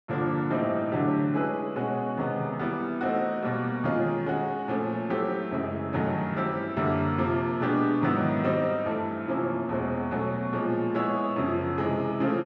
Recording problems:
none

